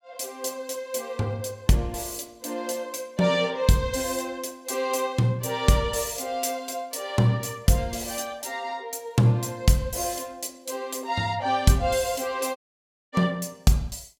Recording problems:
dropout; at 13 s for 0.5 s

